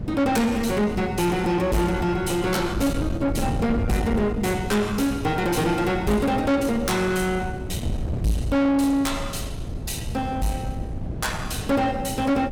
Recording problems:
distorted audio; soft clipping, signal-to-distortion ratio 7 dB
wind on the microphone; below 240 Hz, SNR 8 dB

